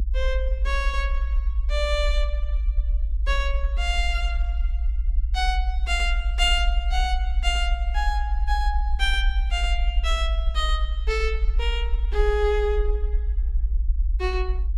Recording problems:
rumble; below 56 Hz, SNR -1 dB

